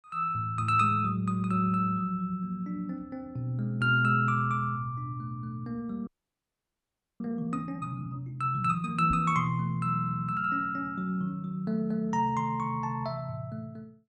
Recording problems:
frozen audio; at 6 s for 1 s
knock on the microphone; at 9 s; peak -2 dB vs average level

